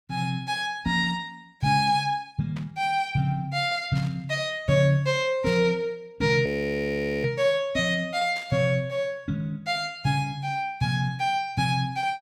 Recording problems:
burst of static; 4 times, first at 2.5 s; peak -11 dB vs average level
frozen audio; at 6.5 s for 1 s

